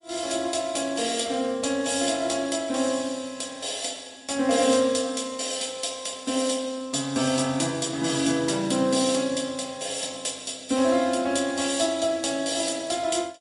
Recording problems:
codec artefacts; MP3, log-spectral distance 6 dB, nothing above 10.7 kHz

